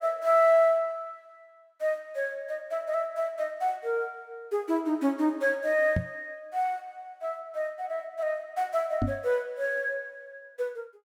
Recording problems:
microphone bump; at 6 s and at 9 s; peak +4 dB vs average level

